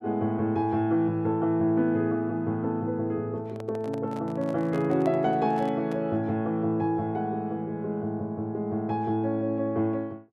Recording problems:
handling noise; from 3.5 to 6 s; peak -7 dB vs average level

